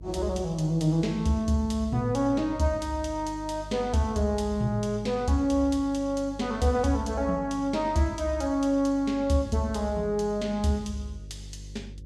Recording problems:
mains hum; 50 Hz, harmonics up to 400 Hz, SNR 17 dB

